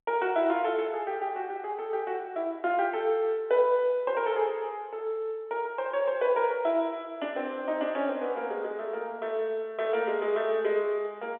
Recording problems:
telephone audio; 280 Hz to 3.6 kHz, G.711

